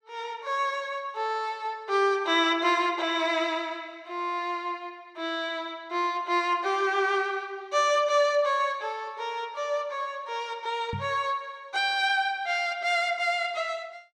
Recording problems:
microphone thump; at 11 s; peak -4 dB vs average level

